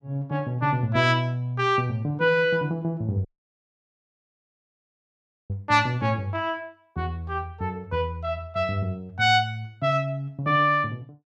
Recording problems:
audio cutting out; at 3.5 s for 2.5 s

